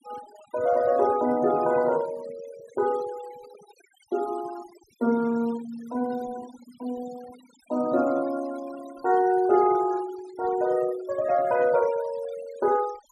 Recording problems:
noise reduction artefacts; signal-to-artefact ratio 19 dB

